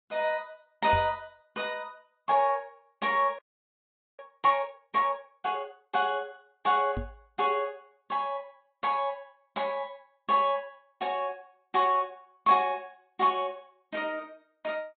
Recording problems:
treble cut off; nothing above 3.8 kHz
lossy compression; Vorbis, log-spectral distance 2 dB
microphone thump; at 1 s and at 7 s; peak -1 dB vs average level
audio freezing; at 3.5 s for 1 s

